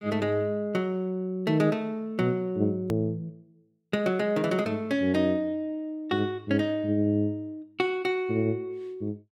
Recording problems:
click at an edit; at 3 s

